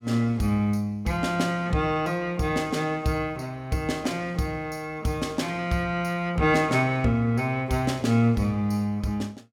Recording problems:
none

